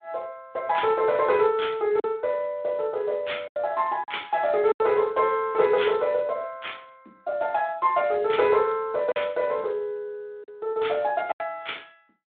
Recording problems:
telephone audio; 220 Hz to 3.6 kHz, Speex
lost packets; 3% of the sound replaced, filled with silence

